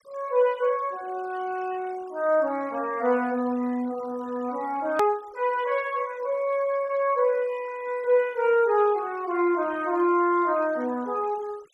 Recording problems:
denoising artefacts; signal-to-artefact ratio 24 dB
edit click; at 5 s

